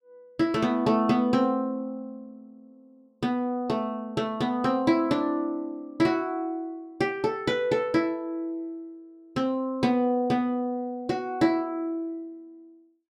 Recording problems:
none

